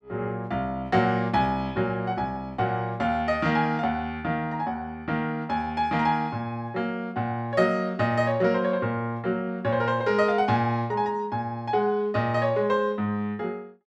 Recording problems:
none

